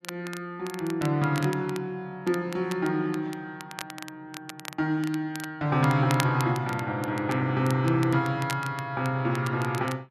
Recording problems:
crackle; vinyl, SNR 15 dB

